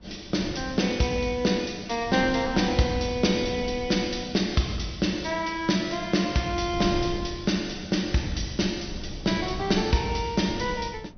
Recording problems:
treble missing; nothing above 6.2 kHz
wind noise; below 190 Hz, SNR 14 dB

